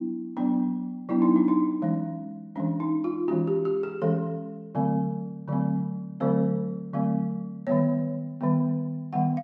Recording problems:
none

